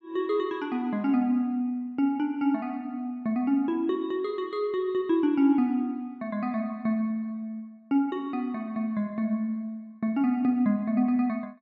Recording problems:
none

